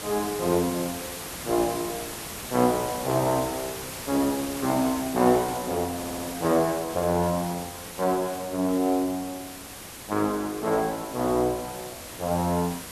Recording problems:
background hiss; slope -2 dB per octave, SNR 10 dB
stutter; at 6 s

